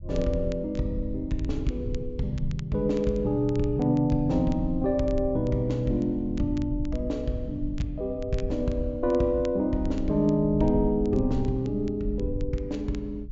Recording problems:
treble cut off; nothing above 7.5 kHz
low-frequency rumble; below 92 Hz, SNR 10 dB
crackle; vinyl, SNR 27 dB

